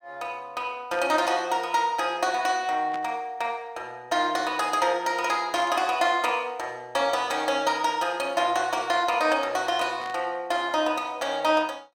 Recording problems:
static burst; 4 times, first at 1 s; peak -10 dB vs average level

